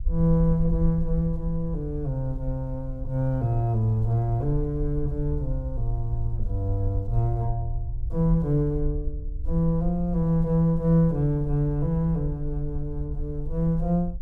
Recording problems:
low-frequency rumble; below 58 Hz, SNR 8 dB

